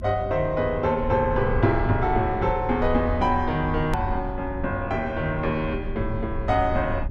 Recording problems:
hum; 60 Hz, harmonics up to 360 Hz, SNR 18 dB
rumble; below 84 Hz, SNR 10 dB
click at an edit; at 4 s

